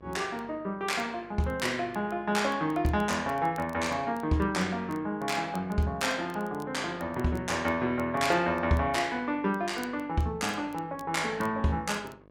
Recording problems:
hum; 50 Hz, harmonics up to 1.8 kHz, SNR 25 dB
crackle; vinyl, SNR 27 dB

